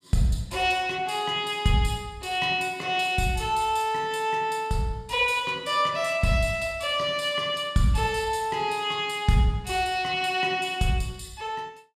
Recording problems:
none

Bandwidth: 15 kHz